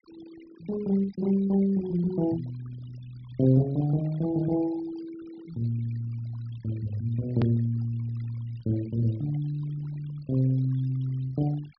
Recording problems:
treble cut off; nothing above 5.5 kHz
noise reduction artefacts; signal-to-artefact ratio 22 dB
click at an edit; at 7.5 s

